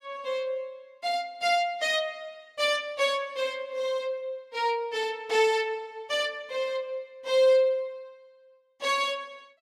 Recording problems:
none

